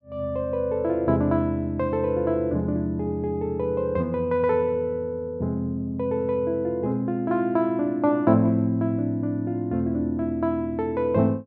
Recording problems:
none

